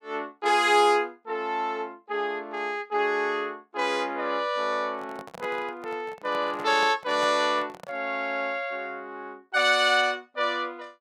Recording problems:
handling noise; from 5 to 8 s; peak -9 dB vs average level

